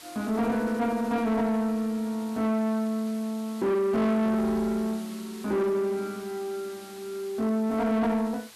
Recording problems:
distorted audio; soft clipping, signal-to-distortion ratio 10 dB
background hiss; slope +1 dB per octave, SNR 20 dB

